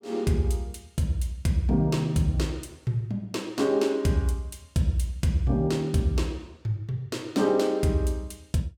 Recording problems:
none

